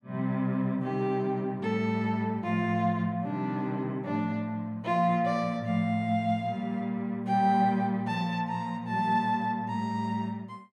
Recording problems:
none

